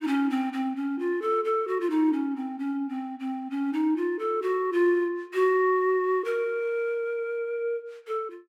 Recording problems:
none

